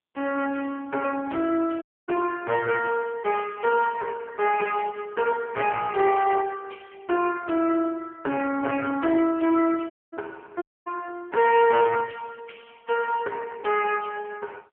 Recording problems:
phone line; 240 Hz to 3.1 kHz, AMR-NB
distorted audio; hard clipping, uneven, signal-to-distortion ratio 12 dB
audio cutting out; at 2 s, at 10 s and at 11 s

